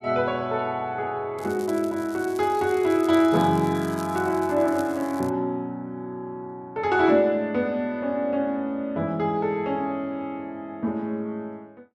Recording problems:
crackling; from 1.5 to 5.5 s; loose cable, SNR 21 dB

